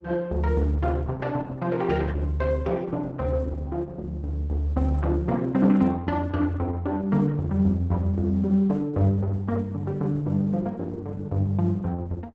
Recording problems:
lossy codec; Opus, log-spectral distance 2 dB, nothing above 7.6 kHz

